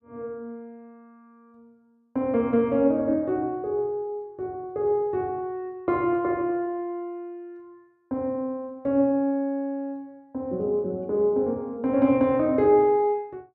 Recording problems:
none

